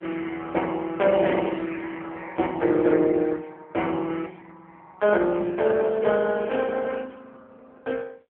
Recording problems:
phone line; 260 Hz to 3.2 kHz, AMR-NB

